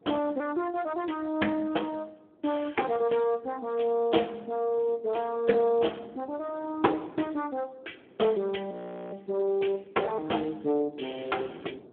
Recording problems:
phone line; 240 Hz to 3.4 kHz, Speex
wind on the microphone; below 780 Hz, SNR 21 dB
frozen audio; at 8.5 s

